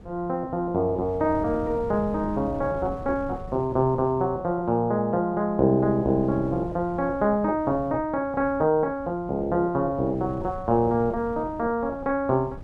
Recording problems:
wind noise; below 230 Hz, SNR 17 dB

